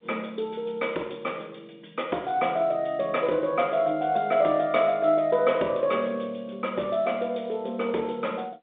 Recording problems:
phone line; 240 Hz to 3.8 kHz, G.711

